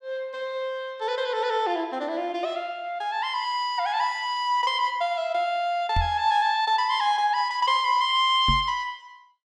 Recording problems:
microphone thump; at 6 s and at 8.5 s; peak +1 dB vs average level

